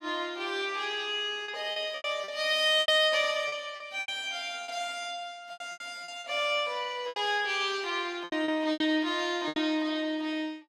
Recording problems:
packet loss; 10% of the sound replaced, filled with repeated pitch periods

